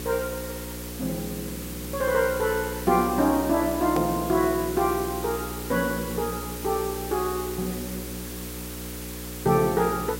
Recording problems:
electrical hum; 60 Hz, harmonics up to 540 Hz, SNR 11 dB
hiss; slope 0 dB per octave, SNR 11 dB
edit click; at 4 s

